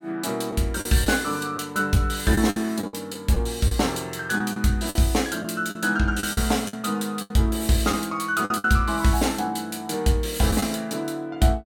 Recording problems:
packet loss; 7% of the sound replaced, filled with the last packet

